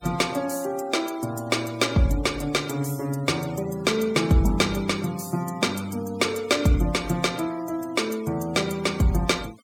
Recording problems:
denoising artefacts; signal-to-artefact ratio 20 dB

